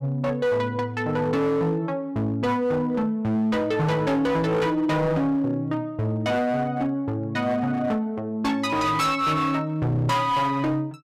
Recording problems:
distortion; hard clipping, signal-to-distortion ratio 10 dB

